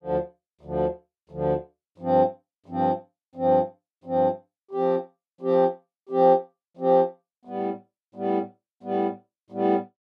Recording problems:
none

